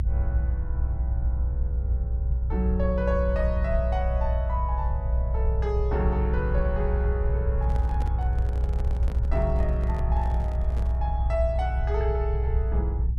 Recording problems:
rumble; below 64 Hz, strongest tone 60 Hz, SNR -5 dB
handling noise; from 7.5 to 11 s; peak -4 dB vs average level

